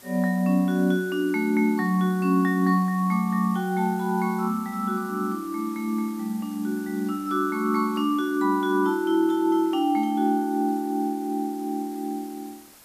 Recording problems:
background hiss; slope -2 dB per octave, SNR 23 dB

